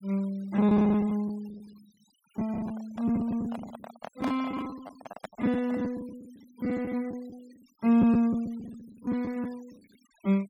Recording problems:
denoising artefacts; signal-to-artefact ratio 25 dB
packet loss; 12% of the sound replaced, filled with the last packet
microphone handling noise; from 2.5 to 6 s; peak -4 dB vs average level

